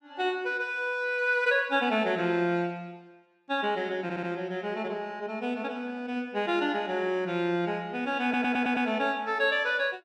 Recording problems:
audio stuttering; at 4 s and at 8 s

